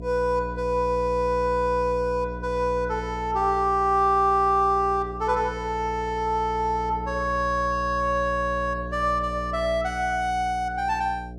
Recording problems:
hum; 60 Hz, harmonics up to 720 Hz, SNR 12 dB

